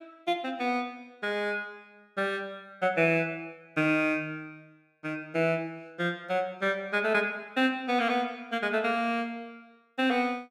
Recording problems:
none

